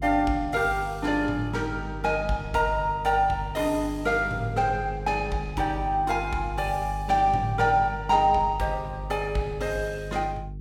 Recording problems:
hum; 50 Hz, harmonics up to 450 Hz, SNR 11 dB

